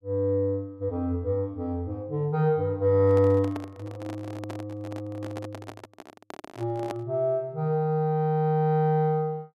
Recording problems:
microphone handling noise; from 3 to 7 s; peak -5 dB vs average level

